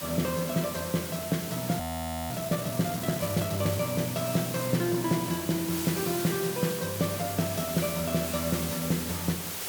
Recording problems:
hum; 50 Hz, harmonics up to 1.3 kHz, SNR 25 dB
hiss; slope -1 dB per octave, SNR 5 dB
frozen audio; at 2 s

